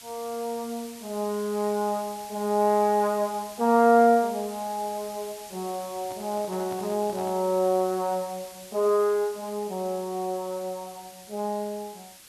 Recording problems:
hiss; slope +2 dB per octave, SNR 17 dB
handling noise; from 6 to 7.5 s; peak -12 dB vs average level

